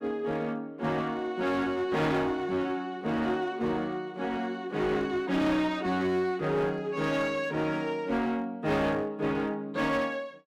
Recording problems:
distortion; hard clipping, uneven, signal-to-distortion ratio 10 dB

